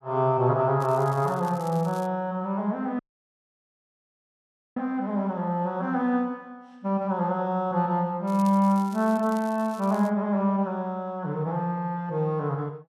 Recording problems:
crackle; from 1 to 2 s and from 8.5 to 10 s; loose cable, SNR 23 dB
audio cutting out; at 3 s for 2 s

